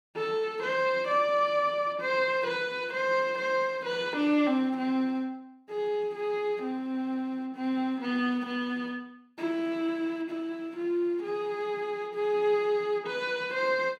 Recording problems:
none

